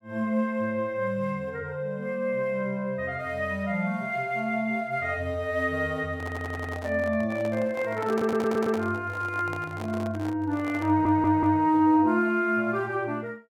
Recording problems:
microphone handling noise; from 6 to 12 s; peak -4 dB vs average level
audio stuttering; at 6 s, at 8 s and at 11 s

